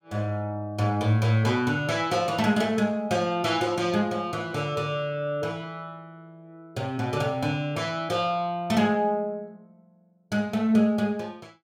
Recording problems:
none

